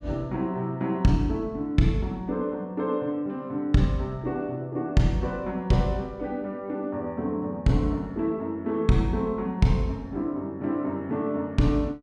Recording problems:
none

